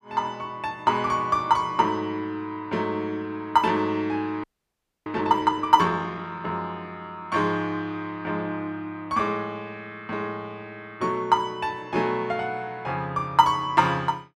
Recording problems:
audio freezing; at 4.5 s for 0.5 s

